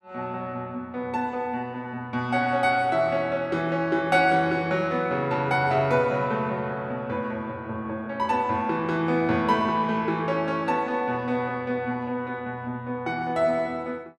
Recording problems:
none

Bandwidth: 13.5 kHz